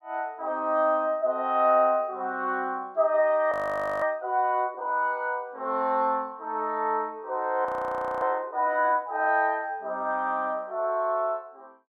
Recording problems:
frozen audio; at 3.5 s and at 7.5 s for 0.5 s

